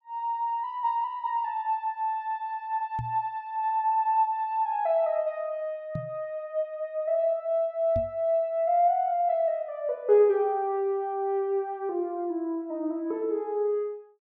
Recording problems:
microphone thump; at 3 s, at 6 s and at 8 s; peak -2 dB vs average level

